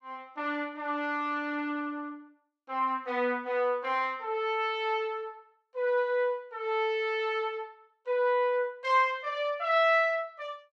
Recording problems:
none

